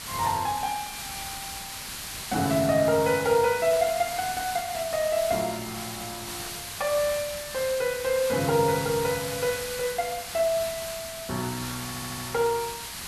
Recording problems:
background hiss; slope +1 dB per octave, SNR 8 dB
stutter; at 12 s

